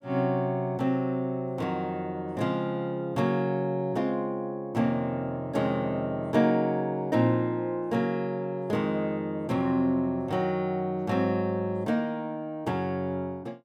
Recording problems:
none

